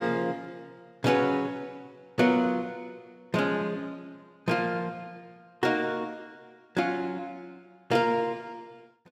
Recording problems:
none

